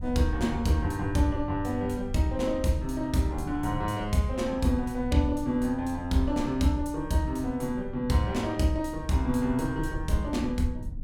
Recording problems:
rumble; below 86 Hz, SNR 12 dB

